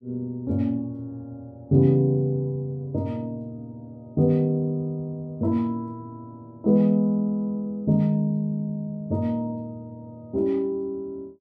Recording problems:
none

